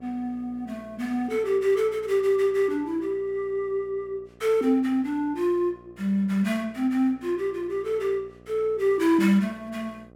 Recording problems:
hum; 60 Hz, harmonics up to 1.3 kHz, SNR 26 dB

